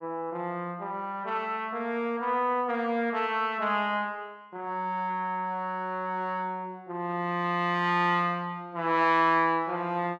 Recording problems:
none

